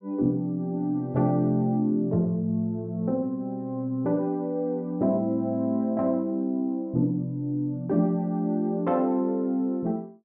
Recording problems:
none

